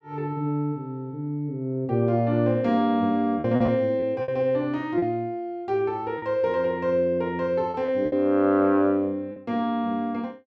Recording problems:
lost packets; 4% of the sound replaced, filled with repeated pitch periods

